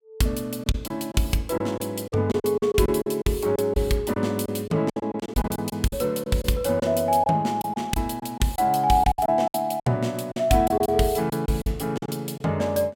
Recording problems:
packet loss; 11% of the sound replaced, filled with silence

